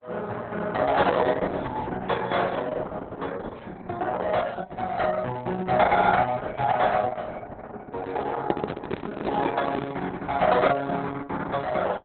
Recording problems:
lossy codec; Opus, log-spectral distance 4 dB, nothing above 3.9 kHz
handling noise; from 8.5 to 10 s; peak +4 dB vs average level

